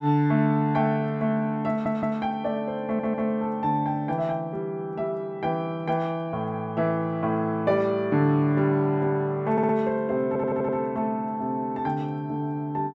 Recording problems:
audio stuttering; 4 times, first at 1.5 s

